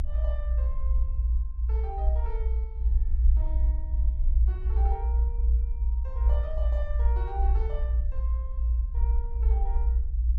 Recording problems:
rumble; below 60 Hz, strongest tone 58 Hz, SNR -15 dB

